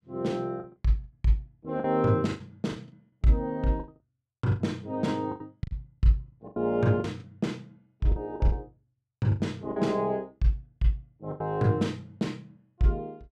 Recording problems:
packet loss; 11% of the sound replaced, filled with the last packet

